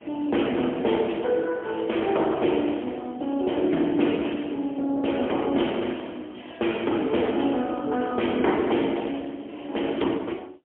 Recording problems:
phone line; 220 Hz to 3.3 kHz, AMR-NB, then MP3

